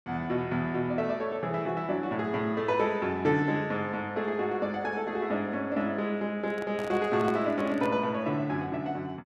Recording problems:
handling noise; from 6.5 to 8 s; peak -5 dB vs average level

